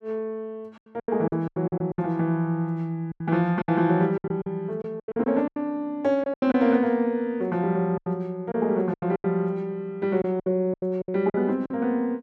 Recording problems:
lost packets; 13% of the sound replaced, filled with silence

